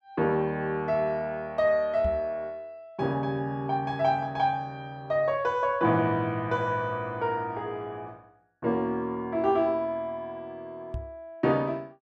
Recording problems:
microphone bump; at 2 s and at 11 s; peak -2 dB vs average level

